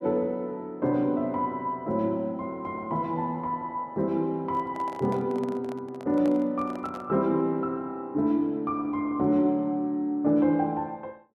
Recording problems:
microphone handling noise; from 4.5 to 7 s; peak -8 dB vs average level

